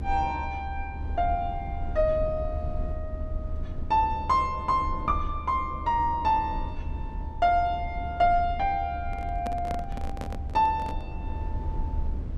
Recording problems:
rumble; below 74 Hz, SNR 8 dB
microphone handling noise; from 9 to 11 s; peak -5 dB vs average level

